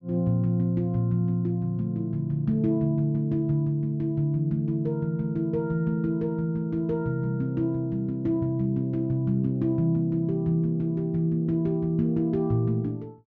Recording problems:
treble missing; nothing above 6.9 kHz

